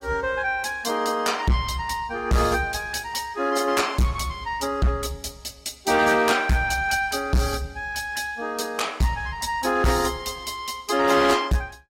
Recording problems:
lossy codec; AAC, log-spectral distance 4 dB, nothing above 16.5 kHz
distortion; hard clipping, signal-to-distortion ratio 7 dB

